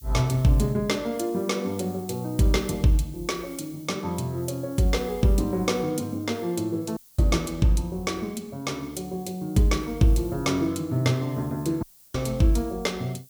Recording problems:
background hiss; slope +10 dB per octave, SNR 22 dB
dropout; at 7 s and at 12 s

